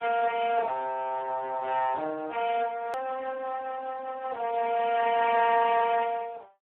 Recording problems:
phone line; 280 Hz to 2.3 kHz, Speex
hard cut with a click; at 3 s

